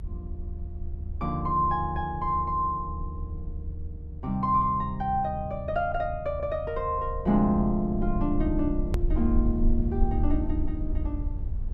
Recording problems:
rumble; below 76 Hz, SNR 6 dB
edit click; at 9 s

